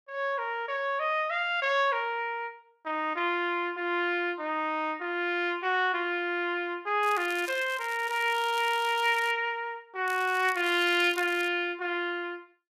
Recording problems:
crackling; from 7 to 9.5 s and from 10 to 11 s; loose cable, SNR 17 dB

